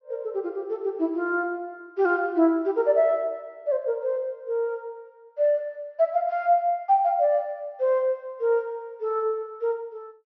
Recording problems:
treble missing; nothing above 6.1 kHz

